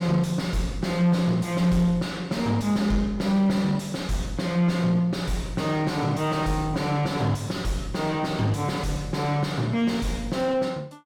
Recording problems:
distorted audio; soft clipping, signal-to-distortion ratio 8 dB

